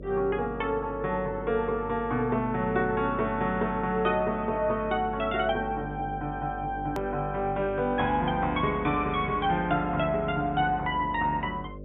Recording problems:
treble missing; nothing above 3.6 kHz
electrical hum; 50 Hz, harmonics up to 600 Hz, SNR 13 dB
click at an edit; at 7 s

